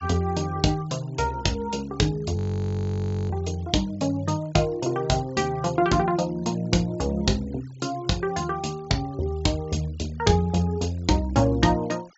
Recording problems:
low-pass filter; nothing above 8 kHz
noise reduction artefacts; signal-to-artefact ratio 24 dB
frozen audio; at 2.5 s for 1 s

